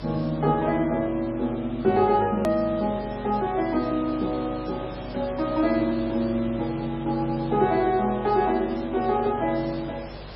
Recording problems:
codec artefacts; MP3, log-spectral distance 9 dB, nothing above 13.1 kHz
hum; 50 Hz, harmonics up to 400 Hz, SNR 19 dB
hiss; SNR 16 dB
edit click; at 2.5 s

